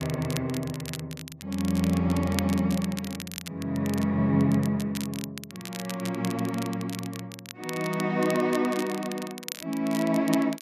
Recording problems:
crackling; vinyl, SNR 13 dB

